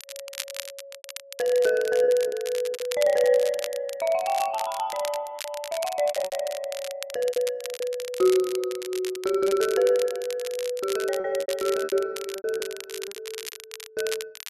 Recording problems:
crackling; vinyl, SNR 12 dB
packet loss; 10% of the sound replaced, filled with repeated pitch periods

